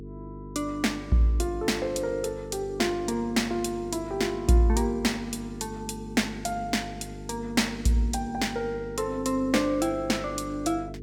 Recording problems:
electrical hum; 50 Hz, harmonics up to 450 Hz, SNR 13 dB

